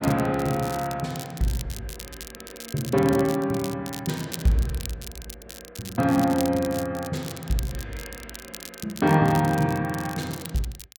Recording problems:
crackle; vinyl, SNR 14 dB

